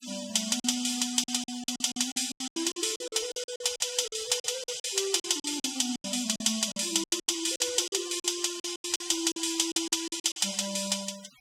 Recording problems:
noise reduction artefacts; signal-to-artefact ratio 16 dB
lost packets; 16% of the sound replaced, filled with silence

